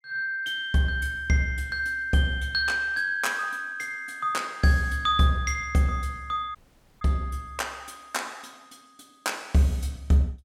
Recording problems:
audio cutting out; at 6.5 s

